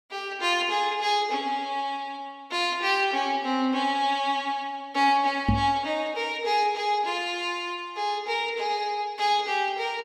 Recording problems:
microphone thump; at 5.5 s; peak +6 dB vs average level

